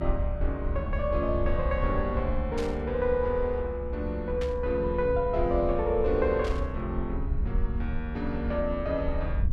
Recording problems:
low-frequency rumble; below 70 Hz, SNR 4 dB
static burst; at 2.5 s, at 4.5 s and at 6.5 s; peak -7 dB vs average level

